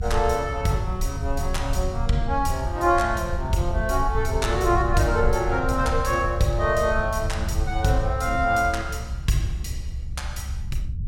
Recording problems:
rumble; below 78 Hz, SNR 5 dB

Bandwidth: 16.5 kHz